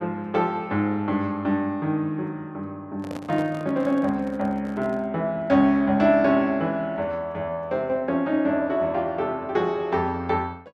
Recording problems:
handling noise; from 3 to 5 s; peak -8 dB vs average level

